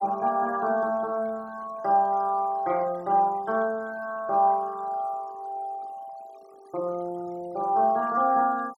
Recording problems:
denoising artefacts; signal-to-artefact ratio 25 dB

